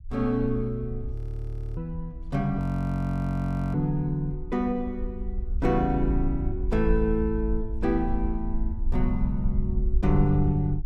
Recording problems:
rumble; below 58 Hz, SNR 5 dB
audio freezing; at 1 s for 0.5 s and at 2.5 s for 1 s

